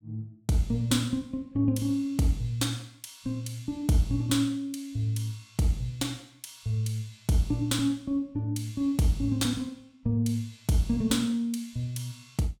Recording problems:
none

